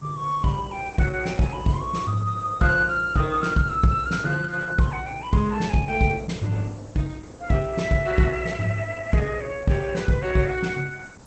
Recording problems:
codec artefacts; Opus, log-spectral distance 5 dB, nothing above 8 kHz
background hiss; SNR 24 dB

